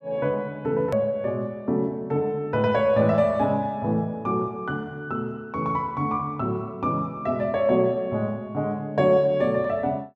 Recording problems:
edit click; at 1 s

